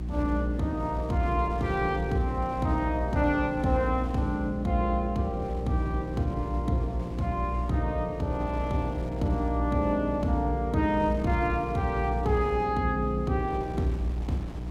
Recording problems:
hum; 60 Hz, harmonics up to 360 Hz, SNR 6 dB
wind on the microphone; below 600 Hz, SNR 16 dB

